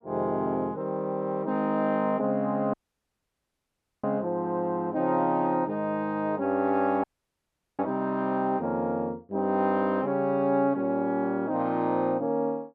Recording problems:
audio cutting out; at 2.5 s for 1.5 s and at 7 s for 1 s

